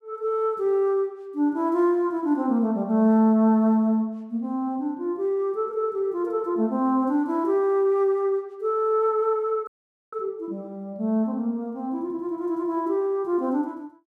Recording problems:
dropout; at 9.5 s

